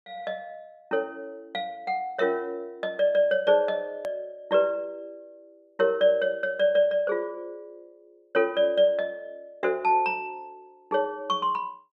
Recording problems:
click at an edit; at 4 s

